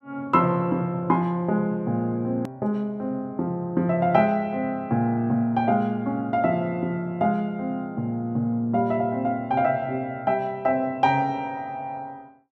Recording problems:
hard cut with a click; at 2.5 s

